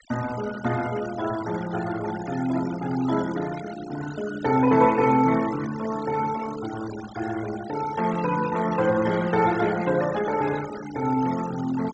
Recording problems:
treble missing; nothing above 8 kHz
denoising artefacts; signal-to-artefact ratio 14 dB

